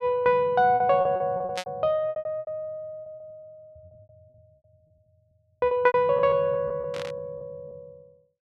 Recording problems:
packet loss; 16% of the sound replaced, filled with repeated pitch periods
static burst; at 1.5 s and at 7 s; peak -3 dB vs average level

